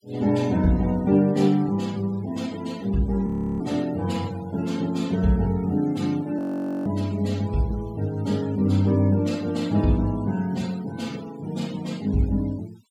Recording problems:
noise reduction artefacts; signal-to-artefact ratio 22 dB
frozen audio; at 3.5 s and at 6.5 s

